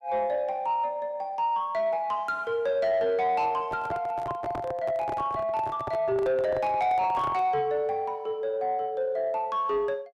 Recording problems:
distorted audio; soft clipping, signal-to-distortion ratio 11 dB
microphone handling noise; from 3.5 to 7.5 s; peak -3 dB vs average level

